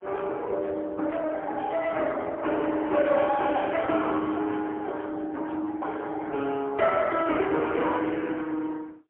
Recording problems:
telephone audio; 240 Hz to 3.3 kHz, AMR-NB, then MP3

